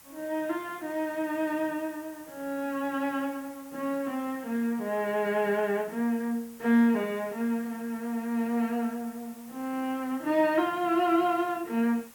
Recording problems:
hiss; SNR 21 dB

